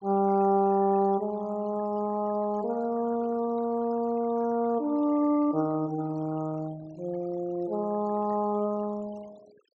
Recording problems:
treble missing; nothing above 8 kHz
noise reduction artefacts; signal-to-artefact ratio 24 dB

